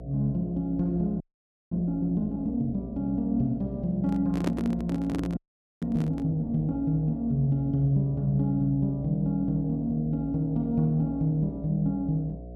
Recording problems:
electrical hum; 60 Hz, harmonics up to 720 Hz, SNR 14 dB
audio freezing; at 1 s for 0.5 s and at 5.5 s
handling noise; from 4 to 6.5 s; peak +2 dB vs average level

